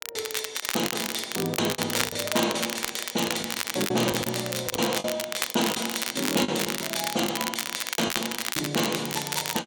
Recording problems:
crackling; vinyl, SNR 2 dB
packet loss; 12% of the sound replaced, filled with the last packet

